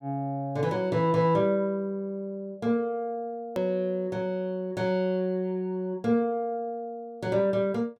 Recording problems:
click at an edit; at 3.5 s

